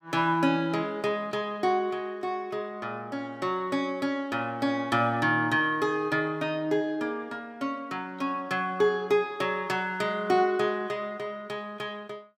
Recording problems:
none

